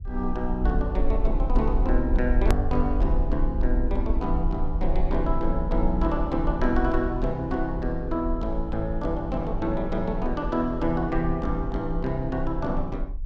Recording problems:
low-frequency rumble; below 50 Hz, SNR 2 dB
click at an edit; at 2.5 s

